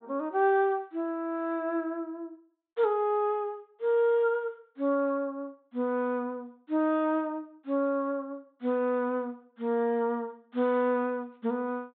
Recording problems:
treble cut off; nothing above 4 kHz

